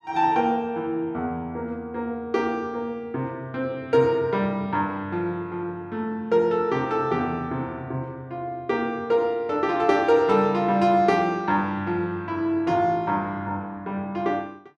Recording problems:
none

